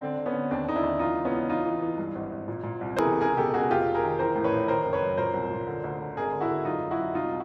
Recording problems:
click at an edit; at 3 s

